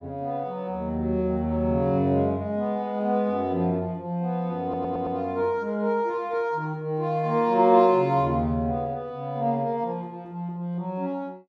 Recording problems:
audio stuttering; at 4.5 s

